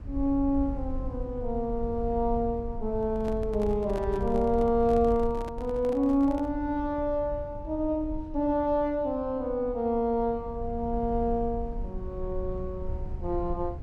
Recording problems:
low-frequency rumble; below 72 Hz, SNR 10 dB
handling noise; from 3 to 6.5 s; peak -9 dB vs average level

